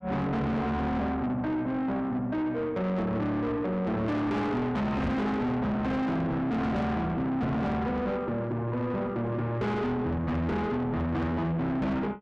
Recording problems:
distorted audio; soft clipping, signal-to-distortion ratio 6 dB
microphone thump; at 5 s and at 7.5 s; peak +5 dB vs average level

